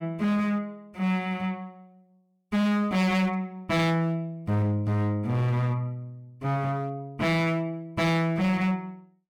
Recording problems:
distorted audio; hard clipping, uneven, signal-to-distortion ratio 7 dB

